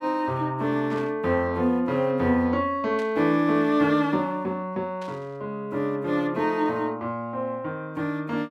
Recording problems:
burst of static; at 1 s, at 3 s and at 5 s; peak -13 dB vs average level

